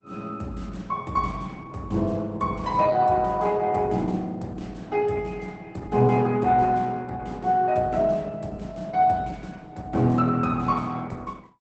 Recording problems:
lossy codec; Opus, log-spectral distance 3 dB, nothing above 8 kHz

